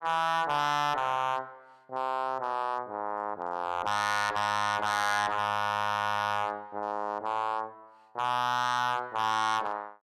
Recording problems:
distortion; hard clipping, signal-to-distortion ratio 6 dB

